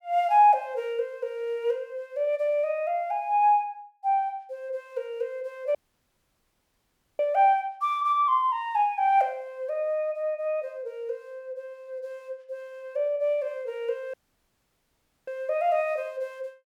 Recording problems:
dropout; at 6 s for 1.5 s and at 14 s for 1 s

